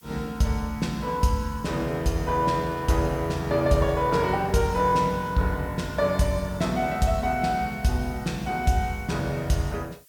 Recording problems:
background hiss; slope +4 dB per octave, SNR 27 dB

